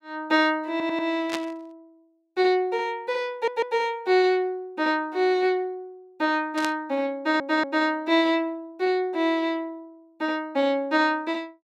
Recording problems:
stutter; at 0.5 s, at 3.5 s and at 7 s
burst of static; at 1.5 s and at 6.5 s; peak -2 dB vs average level

